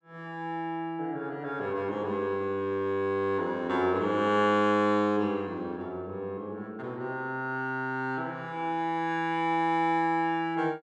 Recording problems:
none

